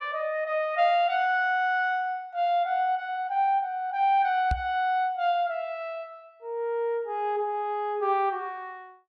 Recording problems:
microphone bump; at 4.5 s; peak +1 dB vs average level

